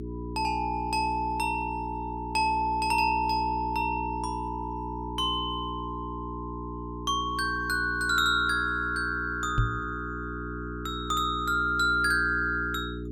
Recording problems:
electrical hum; 60 Hz, harmonics up to 420 Hz, SNR 9 dB
knock on the microphone; at 9.5 s; peak +5 dB vs average level

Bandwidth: 17 kHz